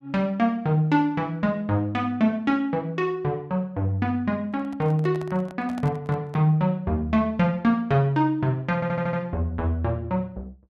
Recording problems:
handling noise; from 4.5 to 6.5 s; peak -9 dB vs average level
stutter; at 9 s

